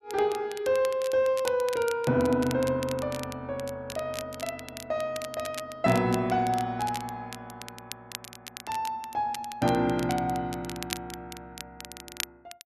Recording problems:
crackling; vinyl, SNR 13 dB

